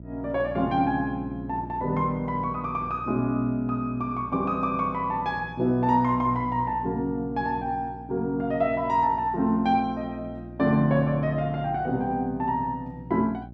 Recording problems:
electrical hum; 60 Hz, harmonics up to 660 Hz, SNR 15 dB

